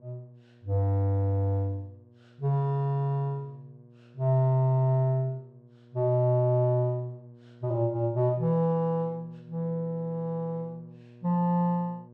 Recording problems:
hum; 60 Hz, harmonics up to 960 Hz, SNR 26 dB

